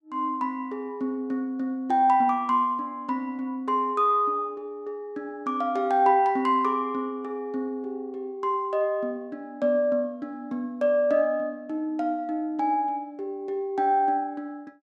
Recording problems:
none

